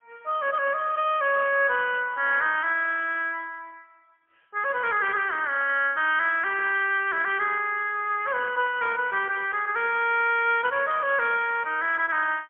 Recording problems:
phone line; 340 Hz to 3.3 kHz, AMR-NB, then MP3

